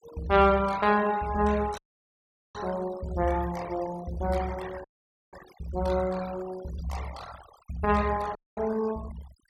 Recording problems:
noise reduction artefacts; signal-to-artefact ratio 17 dB
dropout; at 2 s for 1 s, at 5 s and at 8.5 s

